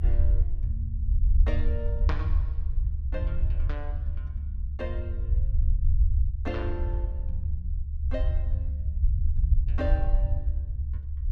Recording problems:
low-frequency rumble; below 72 Hz, SNR -11 dB

